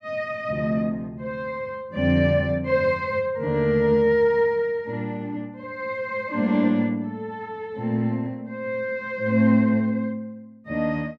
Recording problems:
none

